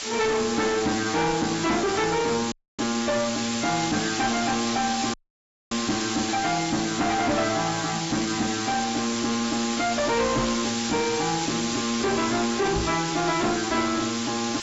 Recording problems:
codec artefacts; AAC, log-spectral distance 18 dB, nothing above 7.6 kHz
distorted audio; hard clipping, uneven, signal-to-distortion ratio 5 dB
hiss; slope +1 dB per octave, SNR 4 dB
audio cutting out; at 2.5 s and at 5 s for 0.5 s
microphone thump; at 10 s and at 13 s; peak -2 dB vs average level

